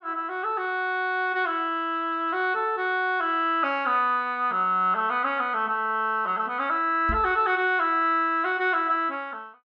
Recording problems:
microphone bump; at 7 s; peak -3 dB vs average level

